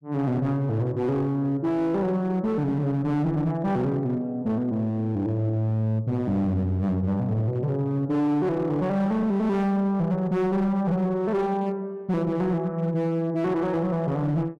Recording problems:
distortion; hard clipping, signal-to-distortion ratio 11 dB

